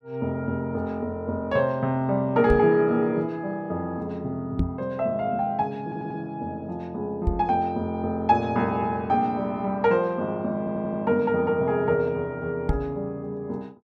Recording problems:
knock on the microphone; 4 times, first at 2.5 s; peak +5 dB vs average level
stutter; at 6 s and at 11 s

